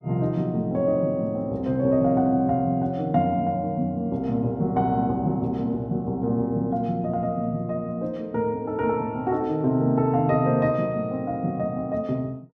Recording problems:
none

